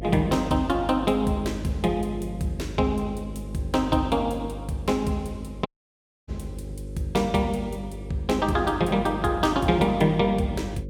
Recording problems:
mains hum; 50 Hz, harmonics up to 550 Hz, SNR 11 dB
dropout; at 5.5 s for 0.5 s

